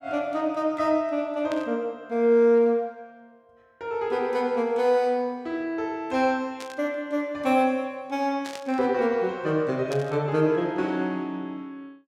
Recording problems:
static burst; 4 times, first at 1.5 s; peak -8 dB vs average level

